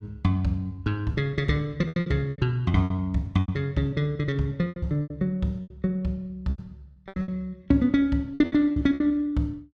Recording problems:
lost packets; 13% of the sound replaced, filled with repeated pitch periods

